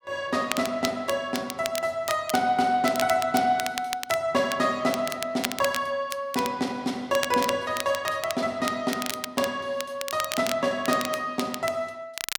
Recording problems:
crackling; vinyl, SNR 9 dB

